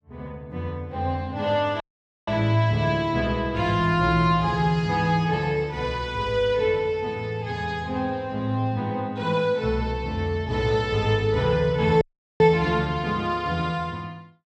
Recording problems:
dropout; at 2 s and at 12 s

